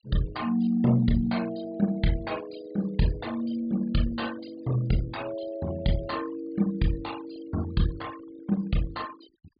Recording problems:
treble missing; nothing above 4.8 kHz
denoising artefacts; signal-to-artefact ratio 18 dB

